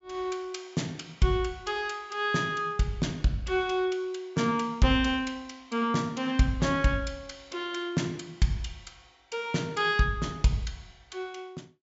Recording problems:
low-pass filter; nothing above 8 kHz

